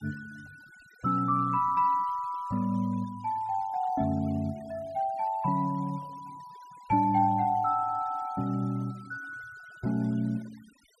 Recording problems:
denoising artefacts; signal-to-artefact ratio 26 dB

